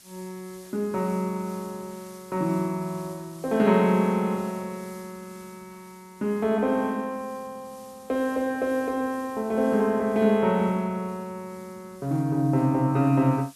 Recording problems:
background hiss; SNR 25 dB

